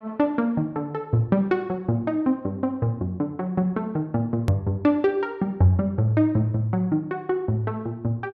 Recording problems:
click at an edit; at 4.5 s

